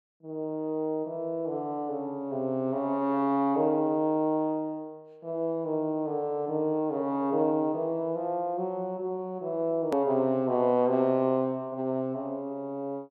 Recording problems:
hard cut with a click; at 10 s

